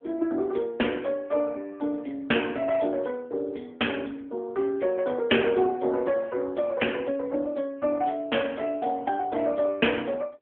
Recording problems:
phone line; 240 Hz to 3.3 kHz, AMR-NB

